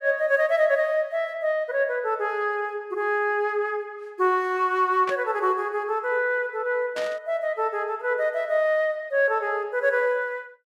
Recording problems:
burst of static; at 5 s and at 7 s; peak -5 dB vs average level

